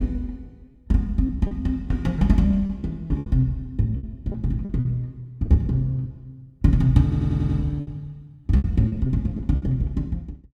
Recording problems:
lost packets; 9% of the sound replaced, filled with repeated pitch periods
stutter; at 7 s

